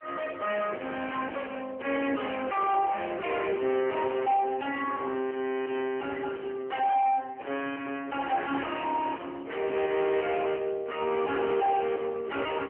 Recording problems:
phone line; 240 Hz to 3.1 kHz, AMR-NB
distortion; soft clipping, signal-to-distortion ratio 7 dB

